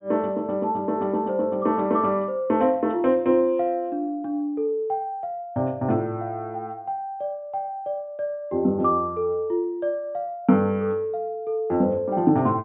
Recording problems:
treble cut off; nothing above 4 kHz

